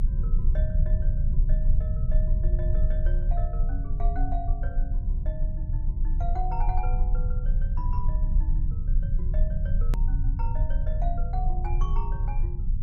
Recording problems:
rumble; below 52 Hz, strongest tone 28 Hz, SNR -12 dB
hard cut with a click; at 10 s

